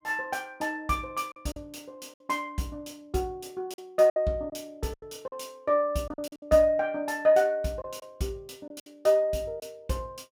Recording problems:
packet loss; 6% of the sound replaced, filled with silence

